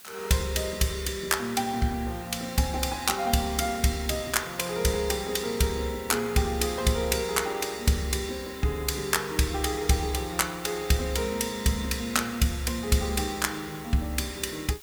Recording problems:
hiss; slope +1 dB per octave, SNR 18 dB

